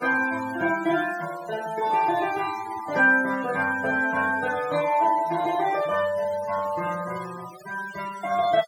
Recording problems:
noise reduction artefacts; signal-to-artefact ratio 17 dB

